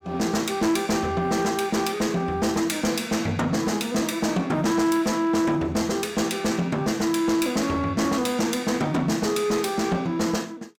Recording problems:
distortion; soft clipping, signal-to-distortion ratio 12 dB

